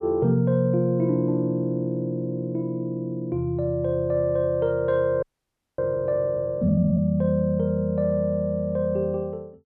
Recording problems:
frozen audio; at 5 s for 0.5 s

